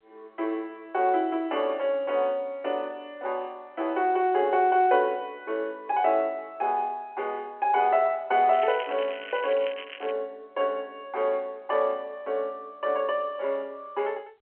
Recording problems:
phone line; 300 Hz to 3.4 kHz, G.711
crackling; from 8.5 to 10 s; loose cable, SNR 14 dB

